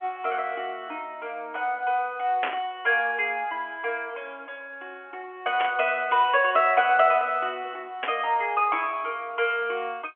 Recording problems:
phone line; 260 Hz to 3.2 kHz, G.711
static burst; at 2.5 s, at 5.5 s and at 8 s; peak +1 dB vs average level

